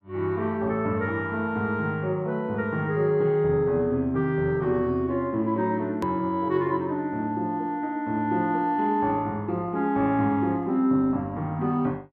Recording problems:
hard cut with a click; at 6 s

